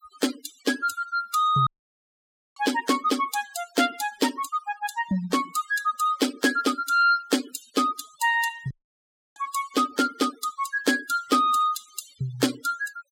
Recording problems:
denoising artefacts; signal-to-artefact ratio 13 dB
audio cutting out; at 1.5 s for 1 s and at 8.5 s for 0.5 s

